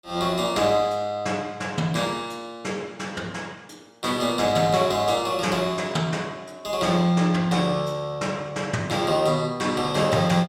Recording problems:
none

